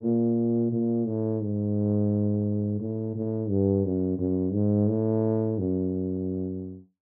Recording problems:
none

